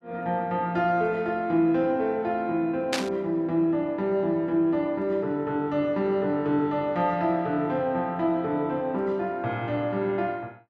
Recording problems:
static burst; at 3 s; peak +3 dB vs average level

